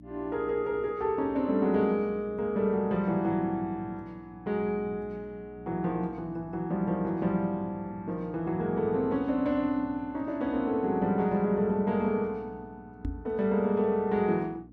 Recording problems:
hum; 60 Hz, harmonics up to 300 Hz, SNR 20 dB
knock on the microphone; at 13 s; peak -1 dB vs average level

